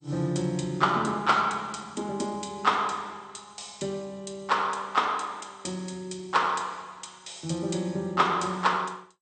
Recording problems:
lossy compression; MP2, log-spectral distance 7 dB, nothing above 8.5 kHz

